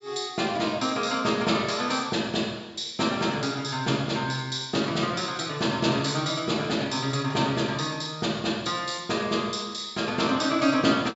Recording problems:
low-pass filter; nothing above 8 kHz

